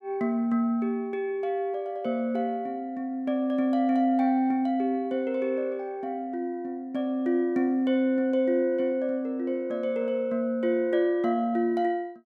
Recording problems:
none

